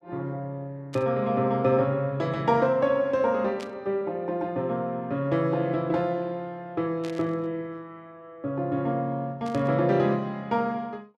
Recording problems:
burst of static; 4 times, first at 1 s; peak -11 dB vs average level

